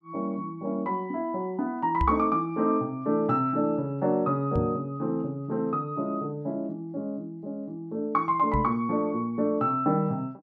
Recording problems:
knock on the microphone; at 2 s, at 4.5 s and at 8.5 s; peak +3 dB vs average level

